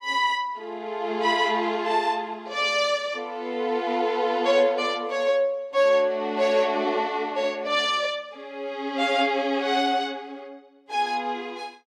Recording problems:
none

